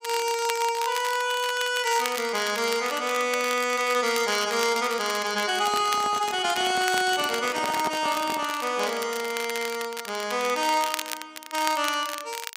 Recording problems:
crackling; vinyl, SNR 10 dB
handling noise; from 5.5 to 8.5 s; peak -3 dB vs average level

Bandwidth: 15.5 kHz